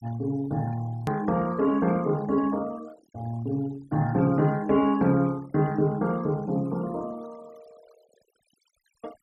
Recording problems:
denoising artefacts; signal-to-artefact ratio 23 dB
edit click; at 1 s

